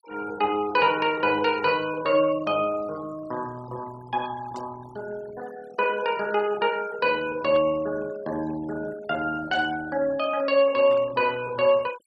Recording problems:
denoising artefacts; signal-to-artefact ratio 20 dB
static burst; 4 times, first at 4.5 s; peak -14 dB vs average level

